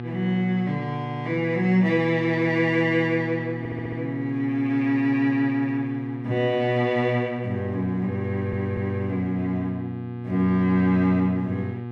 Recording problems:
hum; 60 Hz, harmonics up to 1.2 kHz, SNR 9 dB
stutter; at 3.5 s and at 8.5 s

